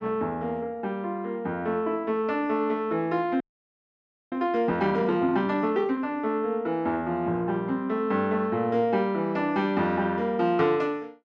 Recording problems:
frozen audio; at 3.5 s for 1 s

